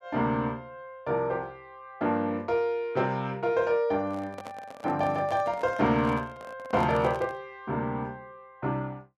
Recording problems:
microphone handling noise; from 4 to 7.5 s; peak -6 dB vs average level

